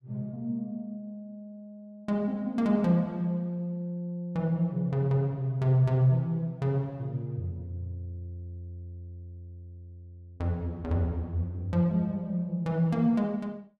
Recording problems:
none

